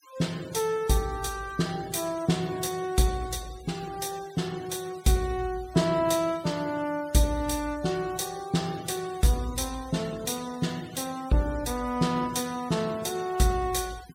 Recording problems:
noise reduction artefacts; signal-to-artefact ratio 18 dB

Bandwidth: 16.5 kHz